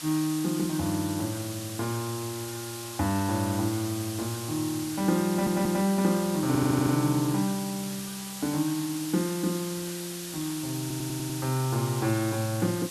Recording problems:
background hiss; slope +1 dB per octave, SNR 8 dB
stutter; at 5.5 s, at 6.5 s and at 11 s

